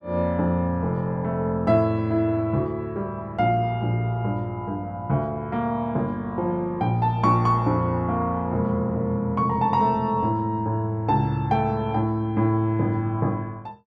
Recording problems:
none

